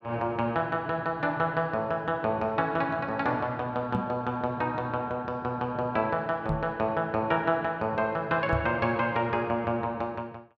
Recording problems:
microphone bump; at 4 s, at 6.5 s and at 8.5 s; peak +3 dB vs average level

